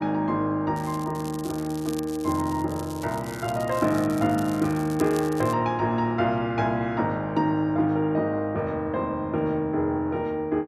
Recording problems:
crackling; from 1 to 5.5 s; loose cable, SNR 18 dB

